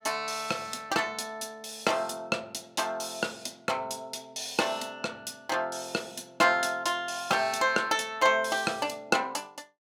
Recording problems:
none

